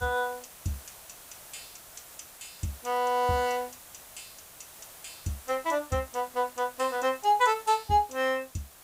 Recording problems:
background hiss; SNR 18 dB

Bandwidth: 15.5 kHz